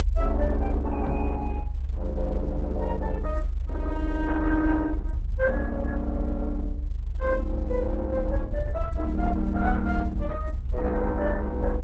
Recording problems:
lossy compression; Opus, log-spectral distance 2 dB
low-frequency rumble; below 66 Hz, strongest tone 40 Hz, SNR 2 dB
microphone thump; at 1 s; peak 0 dB vs average level

